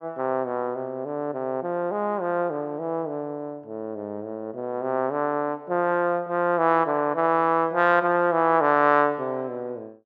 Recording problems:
none

